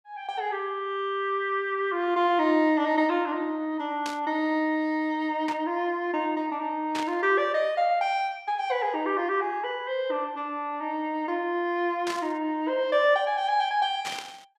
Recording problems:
burst of static; 5 times, first at 4 s; peak -4 dB vs average level

